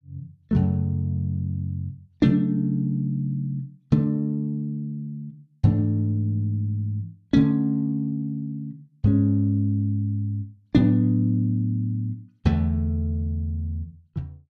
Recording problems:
none

